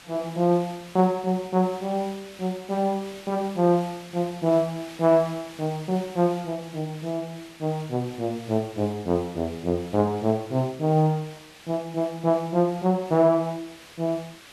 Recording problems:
background hiss; SNR 19 dB

